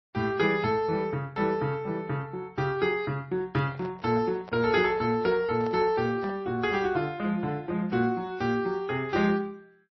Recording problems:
lossy codec; MP3, then AAC, log-spectral distance 2 dB, nothing above 4.8 kHz
microphone handling noise; from 3.5 to 6.5 s; peak -11 dB vs average level

